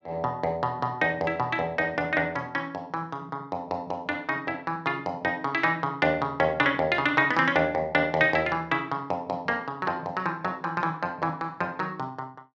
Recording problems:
none

